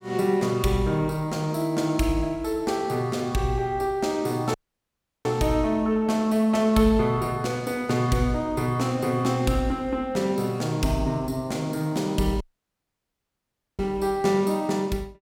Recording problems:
audio cutting out; at 4.5 s for 0.5 s and at 12 s for 1.5 s

